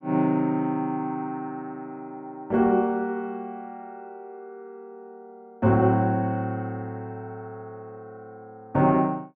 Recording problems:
none

